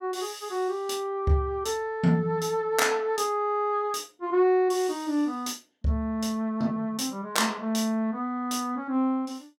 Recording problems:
none

